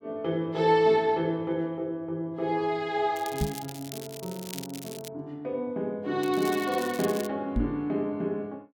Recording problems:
crackle; from 3 to 5 s and from 6 to 7.5 s; loose cable, SNR 14 dB
microphone thump; at 3.5 s and at 7.5 s; peak +4 dB vs average level

